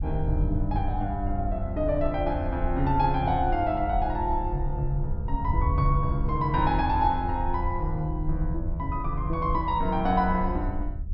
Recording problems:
low-pass filter; nothing above 5.6 kHz
wind on the microphone; below 74 Hz, SNR 5 dB

